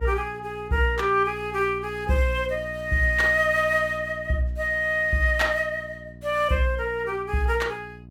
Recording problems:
electrical hum; 60 Hz, harmonics up to 720 Hz, SNR 18 dB

